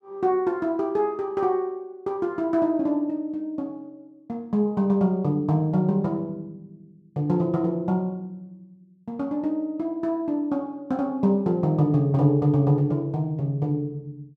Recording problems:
none

